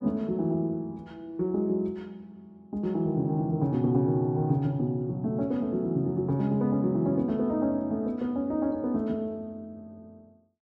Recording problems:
none

